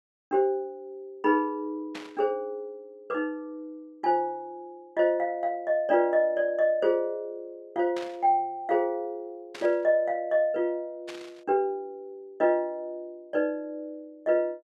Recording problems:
burst of static; 4 times, first at 2 s; peak -9 dB vs average level

